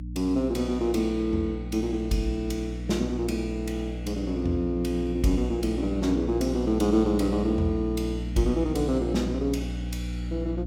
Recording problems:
hum; 60 Hz, harmonics up to 300 Hz, SNR 7 dB

